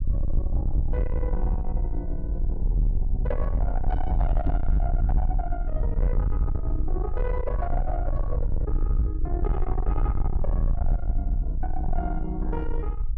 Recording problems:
distorted audio; soft clipping, signal-to-distortion ratio 7 dB
rumble; below 58 Hz, SNR -5 dB
microphone thump; at 4.5 s; peak +8 dB vs average level

